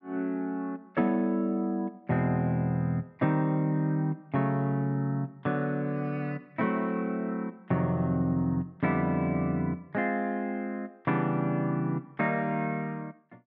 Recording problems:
none

